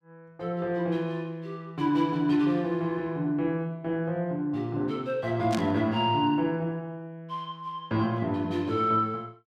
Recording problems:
static burst; at 5.5 s; peak -2 dB vs average level

